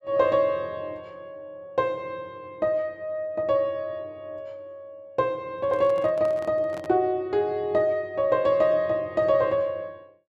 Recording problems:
microphone handling noise; from 5.5 to 7 s; peak -11 dB vs average level

